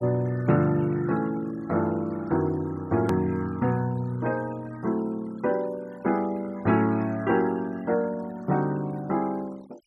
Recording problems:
denoising artefacts; signal-to-artefact ratio 22 dB
click at an edit; at 3 s

